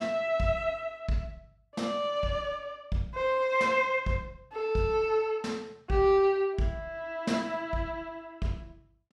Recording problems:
none

